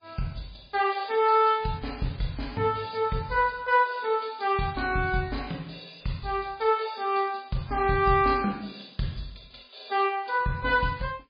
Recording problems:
lossy compression; MP3, log-spectral distance 6 dB, nothing above 4.5 kHz

